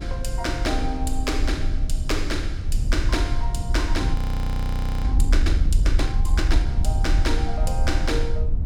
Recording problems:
rumble; below 64 Hz, SNR -4 dB
wind noise; below 100 Hz, SNR 10 dB
frozen audio; at 4 s for 1 s

